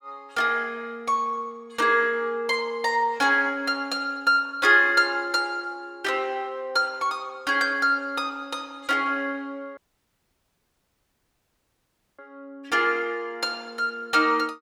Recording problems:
dropout; at 10 s for 2.5 s

